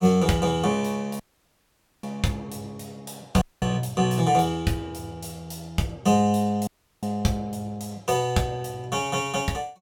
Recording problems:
dropout; at 1 s for 1 s, at 3.5 s and at 6.5 s

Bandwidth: 17 kHz